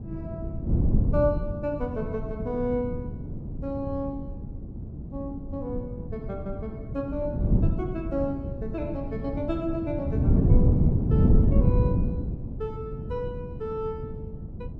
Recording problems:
wind noise; below 180 Hz, SNR -4 dB

